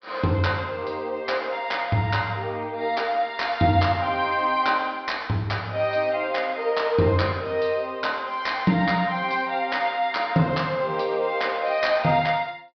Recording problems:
treble cut off; nothing above 5.5 kHz

